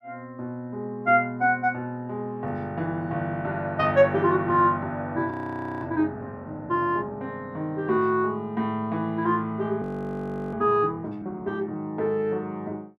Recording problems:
audio freezing; at 5.5 s for 0.5 s and at 10 s for 0.5 s

